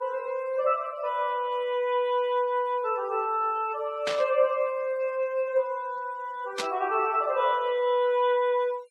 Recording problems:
noise reduction artefacts; signal-to-artefact ratio 26 dB
static burst; at 4 s and at 6.5 s; peak 0 dB vs average level

